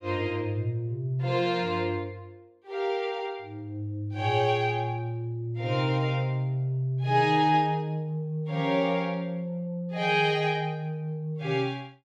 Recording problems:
none

